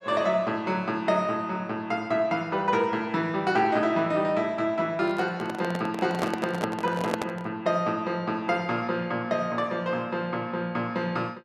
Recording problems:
handling noise; from 5 to 7.5 s; peak +2 dB vs average level

